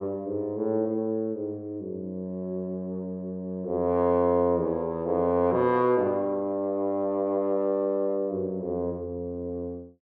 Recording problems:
none

